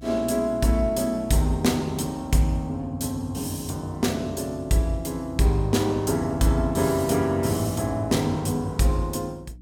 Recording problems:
hum; 60 Hz, harmonics up to 300 Hz, SNR 21 dB

